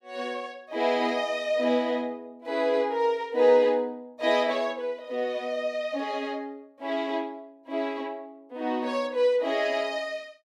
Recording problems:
none

